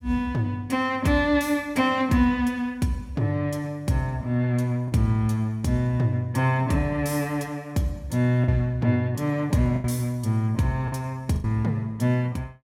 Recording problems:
lost packets; 2% of the sound replaced, filled with the last packet

